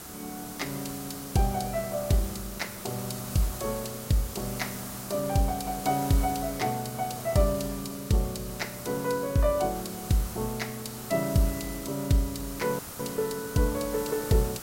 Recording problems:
hiss; SNR 9 dB
audio cutting out; at 13 s

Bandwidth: 16 kHz